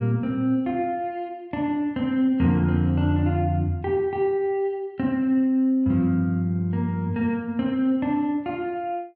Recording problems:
treble missing; nothing above 6.6 kHz

